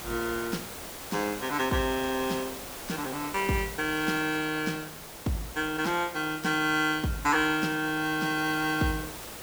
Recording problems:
background hiss; slope -3 dB per octave, SNR 11 dB

